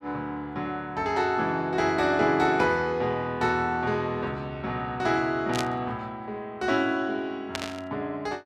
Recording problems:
static burst; at 5.5 s and at 7.5 s; peak +1 dB vs average level

